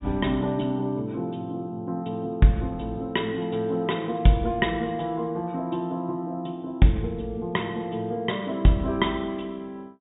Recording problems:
treble cut off; nothing above 4 kHz

